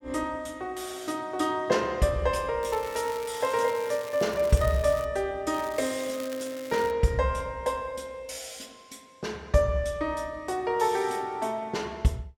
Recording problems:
crackle; from 2.5 to 5 s and from 5.5 to 7 s; loose cable, SNR 16 dB

